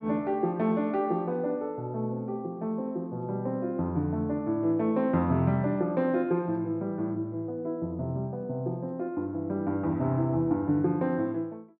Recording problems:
none

